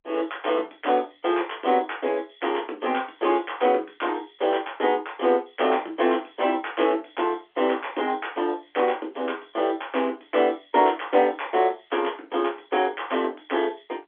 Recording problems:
phone line; 280 Hz to 3.5 kHz, G.711

